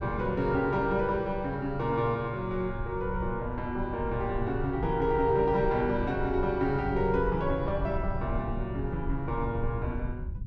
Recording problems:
rumble; below 94 Hz, SNR 9 dB

